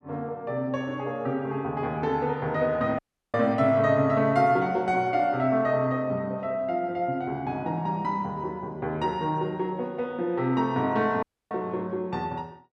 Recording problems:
audio cutting out; at 3 s and at 11 s

